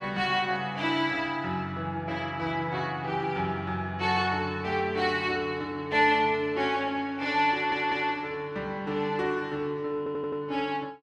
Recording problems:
audio stuttering; at 7.5 s and at 10 s

